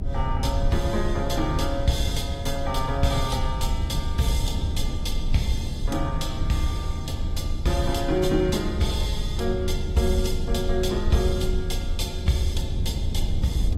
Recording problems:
lossy compression; AAC, log-spectral distance 2 dB, nothing above 13.8 kHz
hum; 60 Hz, harmonics up to 420 Hz, SNR 23 dB
low-frequency rumble; below 80 Hz, strongest tone 22 Hz, SNR 2 dB
wind noise; below 290 Hz, SNR 17 dB

